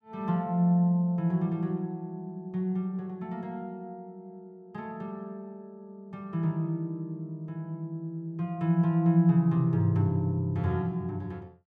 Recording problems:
none

